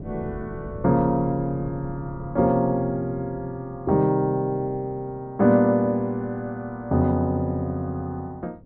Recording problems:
low-pass filter; nothing above 4.5 kHz
wind noise; below 230 Hz, SNR 17 dB

